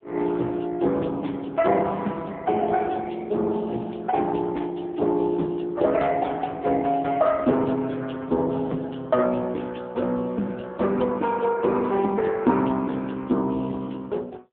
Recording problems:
telephone audio; 170 Hz to 3.5 kHz, AMR-NB

